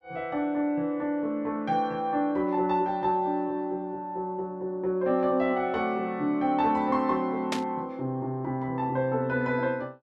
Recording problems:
static burst; at 7.5 s; peak +1 dB vs average level

